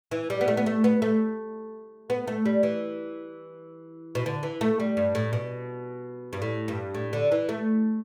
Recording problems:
none

